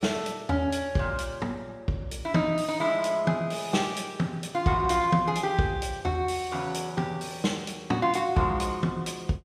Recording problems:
none

